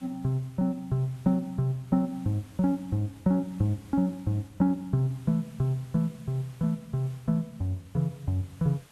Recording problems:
hiss; slope -2 dB per octave, SNR 27 dB

